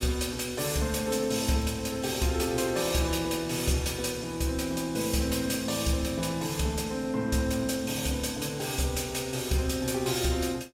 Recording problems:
crackling; from 1 to 2 s; loose cable, SNR 29 dB

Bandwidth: 16 kHz